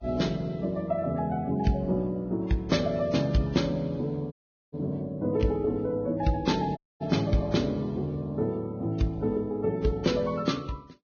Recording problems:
lossy compression; Vorbis, log-spectral distance 2 dB, nothing above 6.5 kHz
dropout; at 4.5 s and at 7 s

